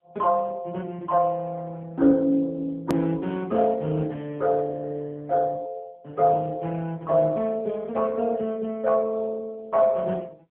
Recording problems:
telephone audio; 170 Hz to 2.2 kHz, AMR-NB
hard cut with a click; at 3 s

